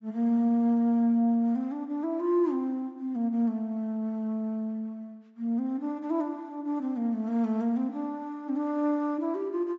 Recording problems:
treble cut off; nothing above 8 kHz

